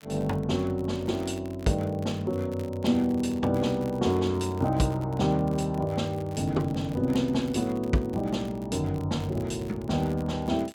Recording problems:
crackling; vinyl, SNR 25 dB

